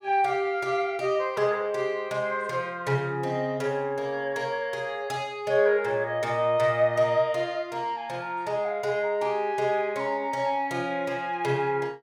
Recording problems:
none

